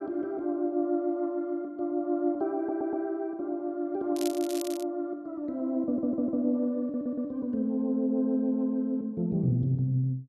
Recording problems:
audio stuttering; at 2.5 s, at 6 s and at 7 s
crackle; at 4 s; loose cable, SNR 13 dB

